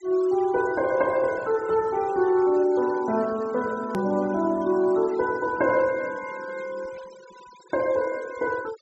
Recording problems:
treble missing; nothing above 7.9 kHz
noise reduction artefacts; signal-to-artefact ratio 22 dB
edit click; at 4 s

